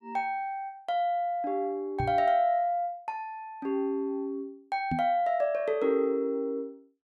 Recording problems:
microphone bump; at 2 s and at 5 s; peak +1 dB vs average level

